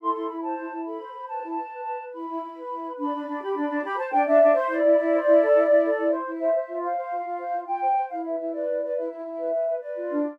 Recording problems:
none

